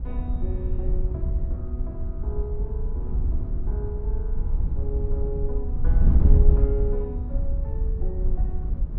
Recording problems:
wind noise; below 68 Hz, SNR -11 dB

